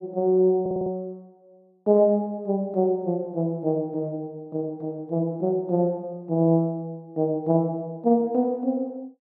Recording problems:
audio stuttering; at 0.5 s

